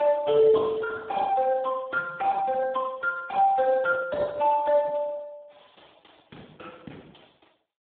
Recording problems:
phone line; 190 Hz to 2.3 kHz, Speex

